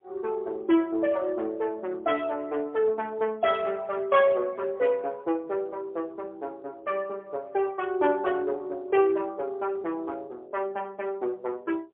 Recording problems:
telephone audio; 300 Hz to 3.9 kHz, AMR-NB, then MP3

